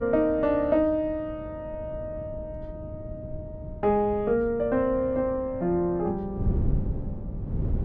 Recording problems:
wind noise; below 150 Hz, SNR 9 dB

